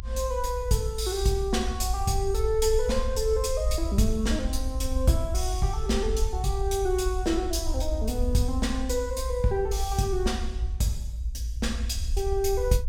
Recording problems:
low-frequency rumble; below 60 Hz, SNR 4 dB

